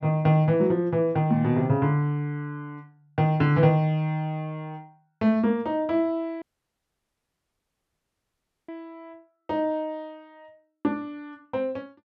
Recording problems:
audio cutting out; at 6.5 s for 2.5 s

